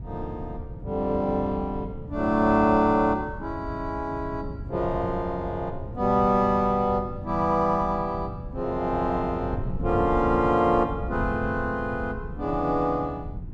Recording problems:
wind on the microphone; below 150 Hz, SNR 11 dB

